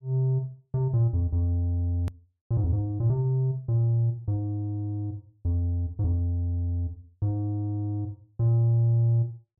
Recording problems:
edit click; at 2 s

